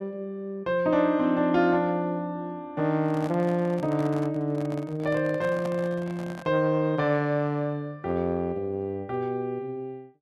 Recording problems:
microphone handling noise; from 3 to 6.5 s; peak -7 dB vs average level

